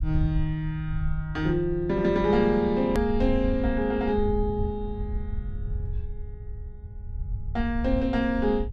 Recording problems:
low-frequency rumble; below 82 Hz, SNR 8 dB
hard cut with a click; at 3 s

